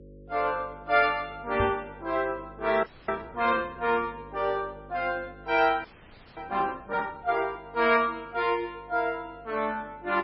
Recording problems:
codec artefacts; MP3, log-spectral distance 3 dB, nothing above 4.9 kHz
hum; 50 Hz, harmonics up to 550 Hz, SNR 22 dB
microphone bump; at 1.5 s; peak -1 dB vs average level
audio freezing; at 3 s and at 6 s for 0.5 s

